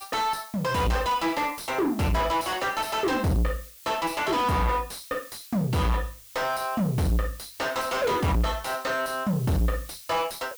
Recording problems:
distortion; soft clipping, signal-to-distortion ratio 6 dB
background hiss; SNR 18 dB

